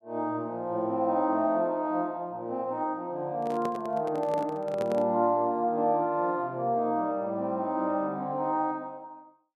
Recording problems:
handling noise; from 3.5 to 5 s; peak -4 dB vs average level

